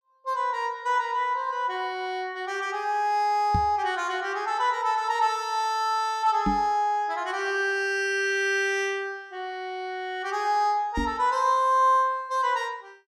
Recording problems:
microphone bump; at 3.5 s, at 6.5 s and at 11 s; peak +2 dB vs average level

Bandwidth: 15 kHz